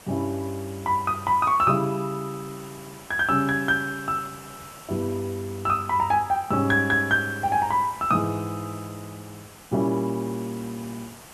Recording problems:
background hiss; slope -3 dB per octave, SNR 19 dB

